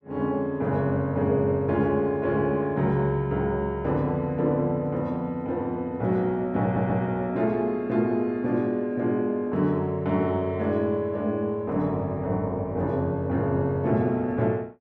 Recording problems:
audio stuttering; at 6.5 s

